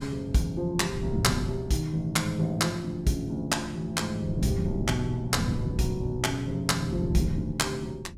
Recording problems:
wind noise; below 200 Hz, SNR 5 dB

